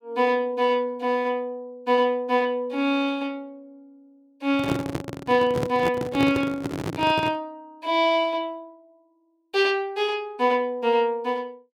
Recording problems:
handling noise; from 4.5 to 7.5 s; peak +1 dB vs average level

